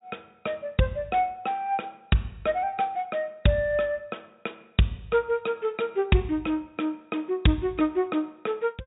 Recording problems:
low-pass filter; nothing above 4 kHz

